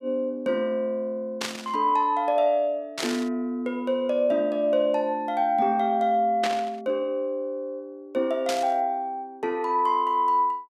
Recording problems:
static burst; 4 times, first at 1.5 s; peak -1 dB vs average level

